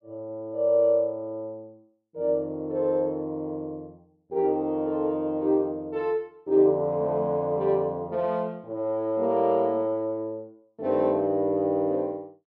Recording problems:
none

